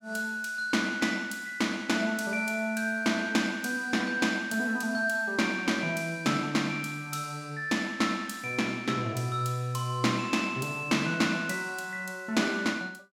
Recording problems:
none

